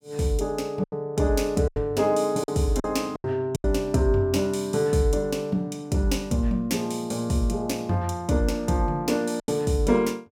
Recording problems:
lost packets; 5% of the sound replaced, filled with silence

